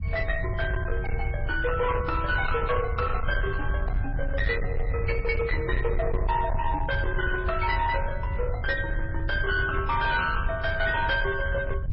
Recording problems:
lossy codec; MP3, log-spectral distance 2 dB, nothing above 5.3 kHz
distorted audio; hard clipping, uneven, signal-to-distortion ratio 11 dB
low-frequency rumble; below 92 Hz, SNR 3 dB

